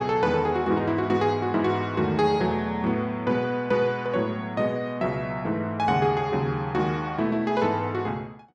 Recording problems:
none

